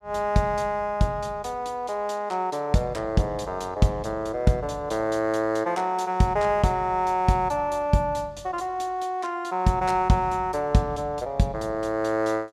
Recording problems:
none

